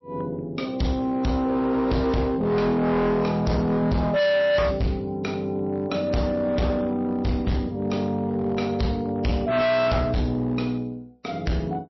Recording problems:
lossy compression; MP3, log-spectral distance 2 dB, nothing above 5.7 kHz
distorted audio; hard clipping, signal-to-distortion ratio 6 dB

